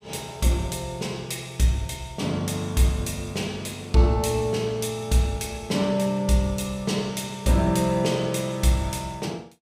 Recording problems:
none

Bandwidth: 15.5 kHz